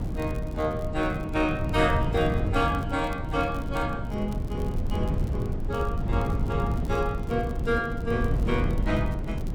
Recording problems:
wind noise; below 160 Hz, SNR 1 dB
crackling; vinyl, SNR 26 dB

